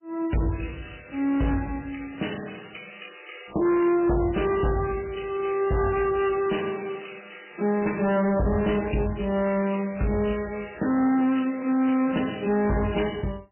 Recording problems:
lossy codec; MP3, log-spectral distance 8 dB, nothing above 3 kHz
distorted audio; hard clipping, signal-to-distortion ratio 10 dB

